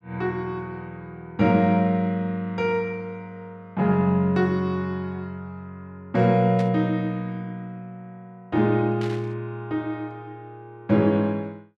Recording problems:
burst of static; at 6.5 s and at 9 s; peak -11 dB vs average level

